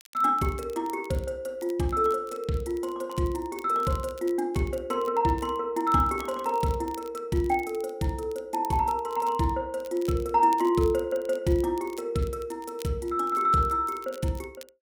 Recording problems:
crackle; vinyl, SNR 24 dB

